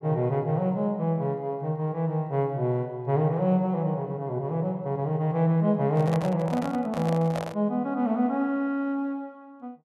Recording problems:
handling noise; from 6 to 7.5 s; peak -2 dB vs average level

